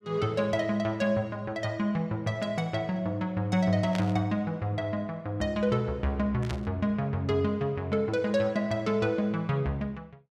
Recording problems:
static burst; at 4 s and at 6.5 s; peak -4 dB vs average level

